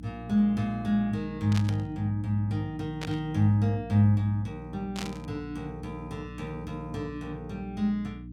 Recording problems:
hum; 60 Hz, harmonics up to 300 Hz, SNR 13 dB
burst of static; at 1.5 s, at 3 s and at 5 s; peak -3 dB vs average level

